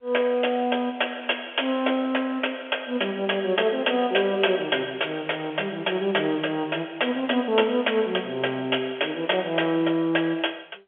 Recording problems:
phone line; 280 Hz to 3.3 kHz, G.711

